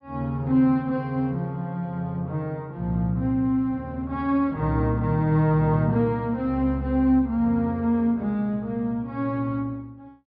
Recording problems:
treble missing; nothing above 5.5 kHz

